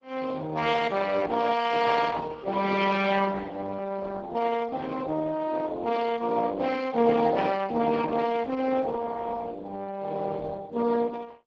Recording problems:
lossy compression; Speex, then Opus, log-spectral distance 4 dB, nothing above 7.6 kHz

